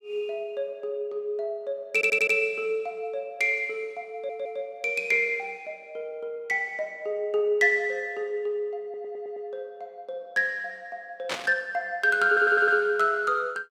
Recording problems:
audio stuttering; 4 times, first at 2 s
static burst; at 11 s; peak 0 dB vs average level

